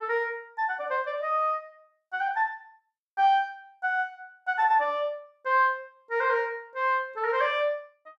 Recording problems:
none

